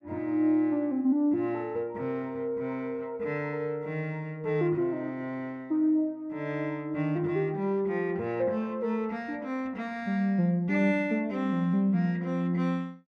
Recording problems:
none

